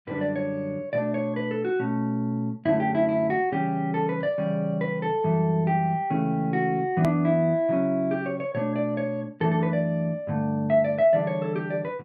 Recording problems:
hard cut with a click; at 7 s

